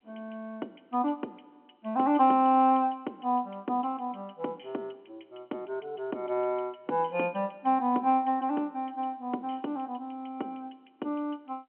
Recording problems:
telephone audio; 220 Hz to 3.4 kHz, G.711

